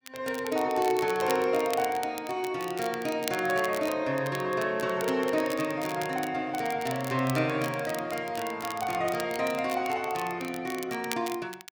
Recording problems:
crackling; vinyl, SNR 13 dB

